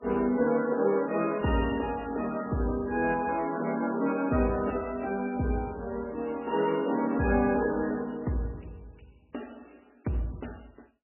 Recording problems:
codec artefacts; MP3, log-spectral distance 6 dB, nothing above 2.5 kHz

